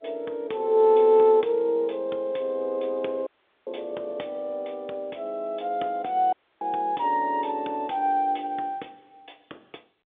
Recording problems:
phone line; 280 Hz to 3.7 kHz, G.711
dropout; at 3.5 s and at 6.5 s

